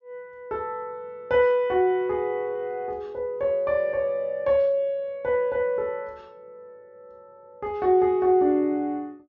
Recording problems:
treble cut off; nothing above 7 kHz

